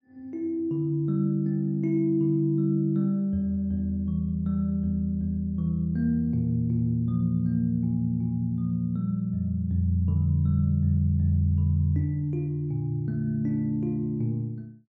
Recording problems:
none

